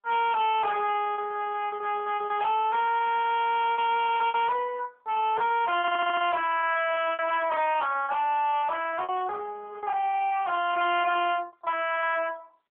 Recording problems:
telephone audio; 320 Hz to 3.5 kHz, AMR-NB
distortion; hard clipping, uneven, signal-to-distortion ratio 6 dB
lost packets; 16% of the sound replaced, filled with repeated pitch periods
audio stuttering; at 6 s

